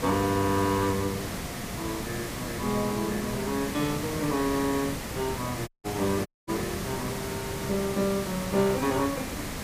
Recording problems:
hiss; slope -4 dB per octave, SNR 4 dB
audio cutting out; at 5.5 s and at 6.5 s

